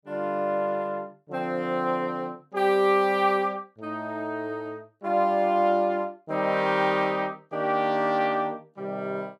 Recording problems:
none

